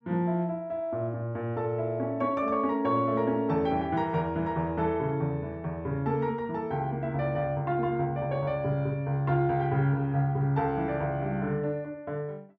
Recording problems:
none

